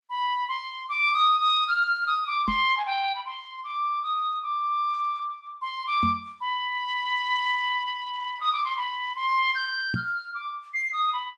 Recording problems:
lossy codec; Opus, log-spectral distance 2 dB
microphone thump; at 2.5 s, at 6 s and at 10 s; peak +1 dB vs average level

